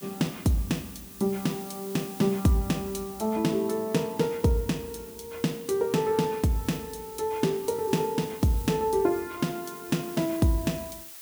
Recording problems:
hiss; slope +2 dB per octave, SNR 15 dB

